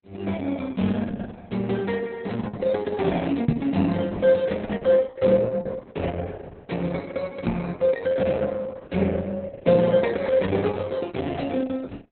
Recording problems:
codec artefacts; Opus, log-spectral distance 4 dB, nothing above 4 kHz
microphone bump; at 3.5 s and at 7.5 s; peak +9 dB vs average level

